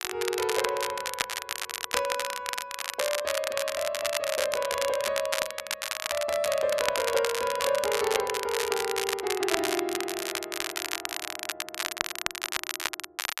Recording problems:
crackle; vinyl, SNR 2 dB

